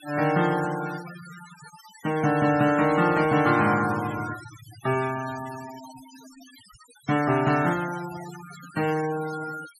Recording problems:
noise reduction artefacts; signal-to-artefact ratio 16 dB

